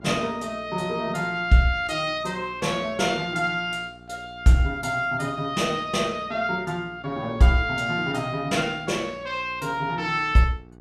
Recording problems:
hum; 60 Hz, harmonics up to 1.2 kHz, SNR 23 dB

